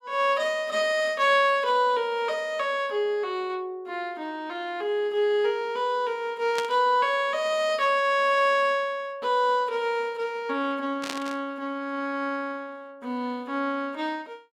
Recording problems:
static burst; at 6.5 s and at 11 s; peak -2 dB vs average level

